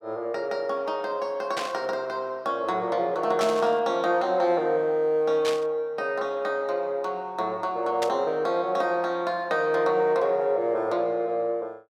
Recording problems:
static burst; 4 times, first at 1.5 s; peak -2 dB vs average level

